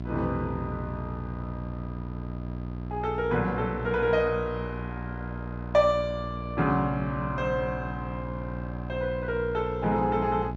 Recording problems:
electrical hum; 60 Hz, harmonics up to 1 kHz, SNR 7 dB

